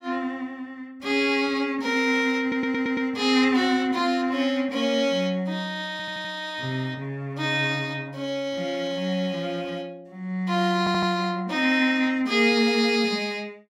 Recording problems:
audio stuttering; at 2.5 s, at 6 s and at 11 s

